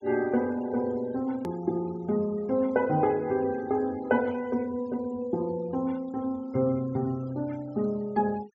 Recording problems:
treble missing; nothing above 7.4 kHz
noise reduction artefacts; signal-to-artefact ratio 24 dB
click at an edit; at 1.5 s

